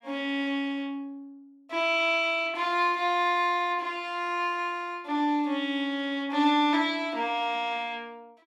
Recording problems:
none

